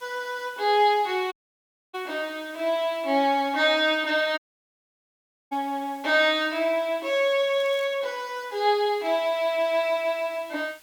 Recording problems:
background hiss; slope +1 dB per octave, SNR 27 dB
audio cutting out; at 1.5 s for 0.5 s and at 4.5 s for 1 s
crackling; at 7.5 s; loose cable, SNR 28 dB

